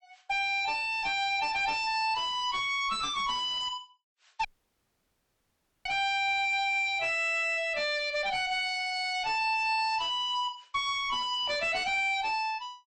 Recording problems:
codec artefacts; MP3, log-spectral distance 3 dB, nothing above 8.2 kHz
distorted audio; soft clipping, signal-to-distortion ratio 6 dB
audio cutting out; at 4.5 s for 1.5 s

